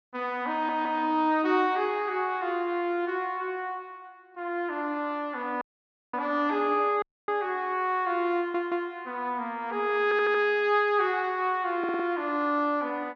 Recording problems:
treble cut off; nothing above 6.6 kHz
stutter; 4 times, first at 0.5 s
dropout; at 5.5 s for 0.5 s and at 7 s

